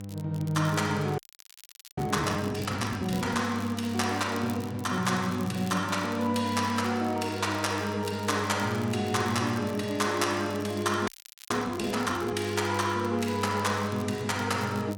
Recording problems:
hum; 50 Hz, harmonics up to 1 kHz, SNR 9 dB
crackle; vinyl, SNR 20 dB
frozen audio; at 1 s for 1 s and at 11 s

